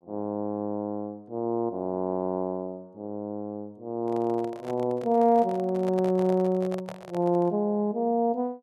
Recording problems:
microphone handling noise; from 4 to 7.5 s; peak -7 dB vs average level

